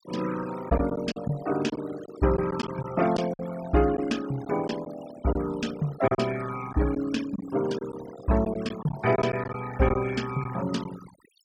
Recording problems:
noise reduction artefacts; signal-to-artefact ratio 14 dB
packet loss; 6% of the sound replaced, filled with silence

